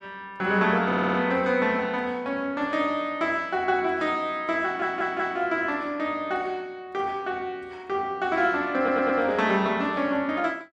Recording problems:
stutter; at 1 s, at 4.5 s and at 9 s

